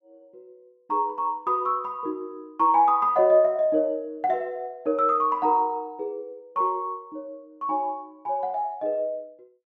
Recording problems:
none

